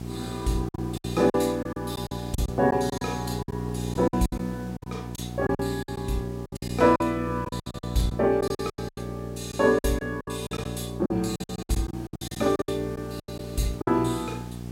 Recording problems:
mains hum; 60 Hz, harmonics up to 780 Hz, SNR 8 dB
hiss; slope -3 dB per octave, SNR 24 dB
lost packets; 15% of the sound replaced, filled with silence

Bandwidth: 16 kHz